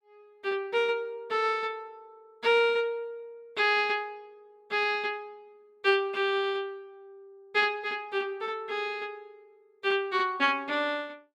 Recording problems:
none

